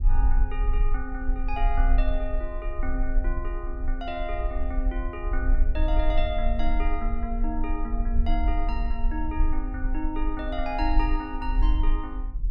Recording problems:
low-frequency rumble; below 44 Hz, strongest tone 24 Hz, SNR -4 dB

